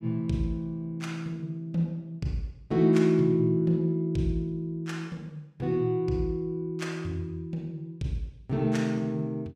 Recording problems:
none

